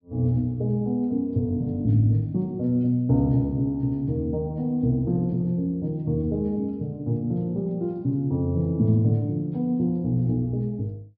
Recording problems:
treble cut off; nothing above 5.3 kHz

